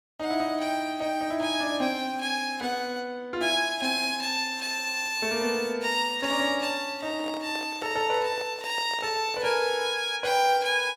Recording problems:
microphone handling noise; from 7 to 9.5 s; peak -8 dB vs average level

